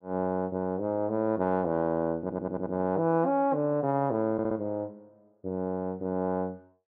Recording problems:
audio stuttering; at 2 s and at 4.5 s

